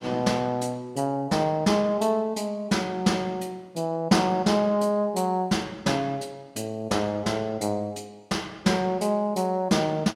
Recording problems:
none

